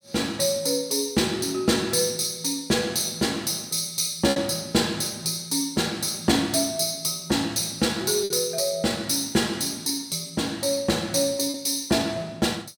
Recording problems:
packet loss; 1.3% of the sound replaced, filled with repeated pitch periods

